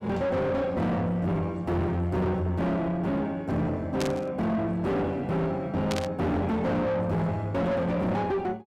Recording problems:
distorted audio; soft clipping, signal-to-distortion ratio 5 dB
burst of static; at 4 s and at 6 s; peak -2 dB vs average level

